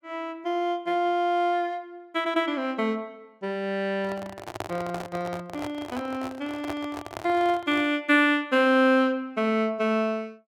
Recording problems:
handling noise; from 4 to 8 s; peak -2 dB vs average level

